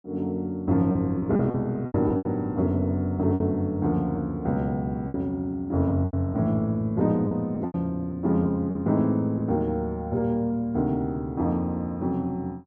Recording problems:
lost packets; 6% of the sound replaced, filled with repeated pitch periods

